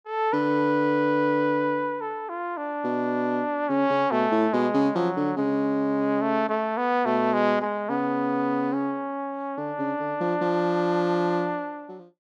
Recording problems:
none

